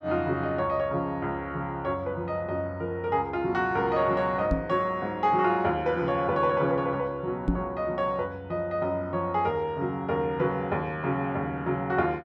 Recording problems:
microphone thump; at 4.5 s and at 7.5 s; peak +6 dB vs average level

